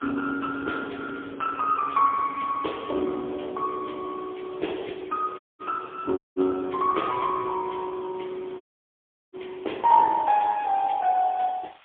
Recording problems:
telephone audio; 260 Hz to 3.5 kHz, AMR-NB, then MP3
hiss; SNR 27 dB
audio cutting out; at 5.5 s, at 6 s and at 8.5 s for 0.5 s

